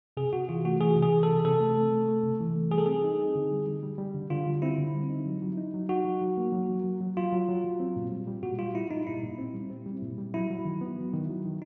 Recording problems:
low-pass filter; nothing above 6.2 kHz

